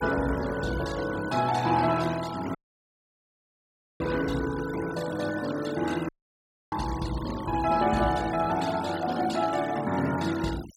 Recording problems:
noise reduction artefacts; signal-to-artefact ratio 14 dB
dropout; at 2.5 s for 1.5 s and at 6 s for 0.5 s

